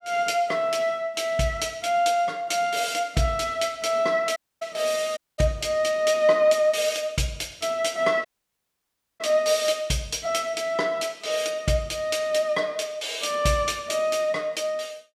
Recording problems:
dropout; at 4.5 s, at 5 s and at 8.5 s for 1 s

